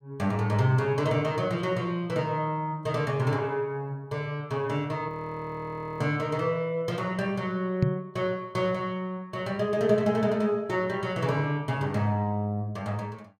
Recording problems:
frozen audio; at 5 s for 1 s
knock on the microphone; at 8 s; peak +8 dB vs average level

